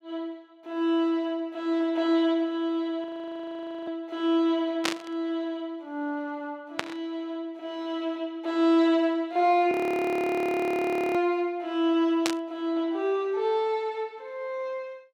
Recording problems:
audio freezing; at 3 s for 1 s and at 9.5 s for 1.5 s
burst of static; at 5 s, at 7 s and at 12 s; peak +5 dB vs average level

